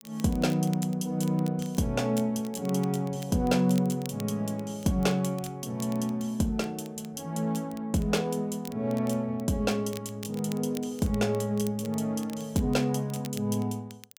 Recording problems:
crackle; vinyl, SNR 20 dB

